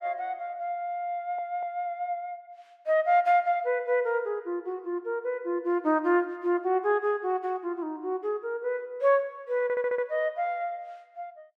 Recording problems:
audio stuttering; at 1 s and at 9.5 s

